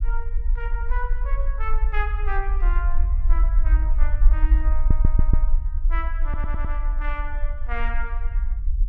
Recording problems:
low-frequency rumble; below 46 Hz, strongest tone 20 Hz, SNR -10 dB
stutter; at 5 s and at 6 s

